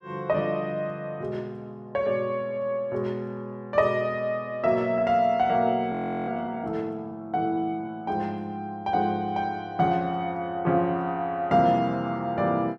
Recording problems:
audio freezing; at 6 s

